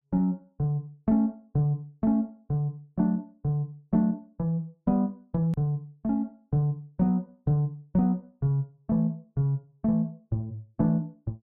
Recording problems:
click at an edit; at 5.5 s

